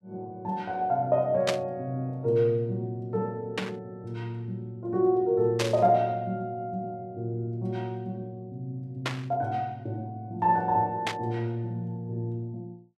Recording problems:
burst of static; 5 times, first at 1.5 s; peak +4 dB vs average level

